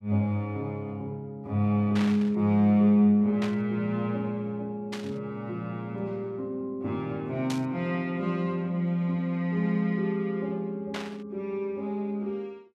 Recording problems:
static burst; 5 times, first at 2 s; peak -4 dB vs average level

